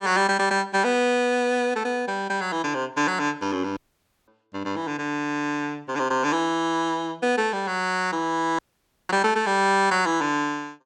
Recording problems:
dropout; at 4 s for 0.5 s and at 8.5 s for 0.5 s

